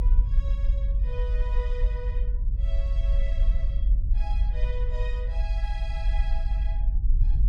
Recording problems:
low-frequency rumble; below 48 Hz, SNR -15 dB

